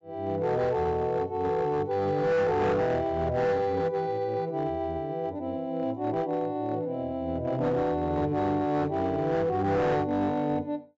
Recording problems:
low-pass filter; nothing above 8 kHz
distortion; hard clipping, signal-to-distortion ratio 11 dB

